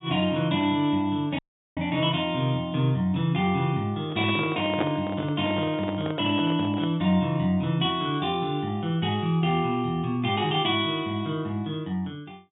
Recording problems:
treble cut off; nothing above 4 kHz
audio cutting out; at 1.5 s
microphone handling noise; from 4 to 7 s; peak +1 dB vs average level

